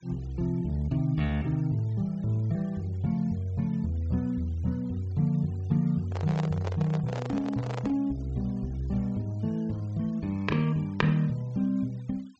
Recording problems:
low-pass filter; nothing above 8 kHz
noise reduction artefacts; signal-to-artefact ratio 27 dB
handling noise; from 6 to 8 s; peak -3 dB vs average level

